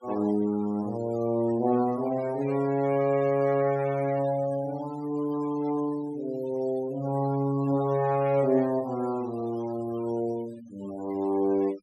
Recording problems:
denoising artefacts; signal-to-artefact ratio 20 dB

